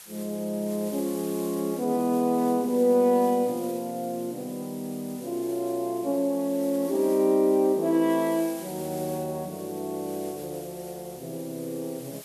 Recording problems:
hiss; slope +1 dB per octave, SNR 17 dB

